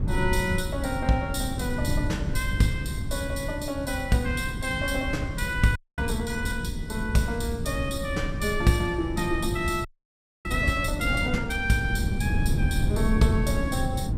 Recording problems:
wind noise; below 150 Hz, SNR 3 dB
audio freezing; at 6 s and at 10 s for 0.5 s

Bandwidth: 15.5 kHz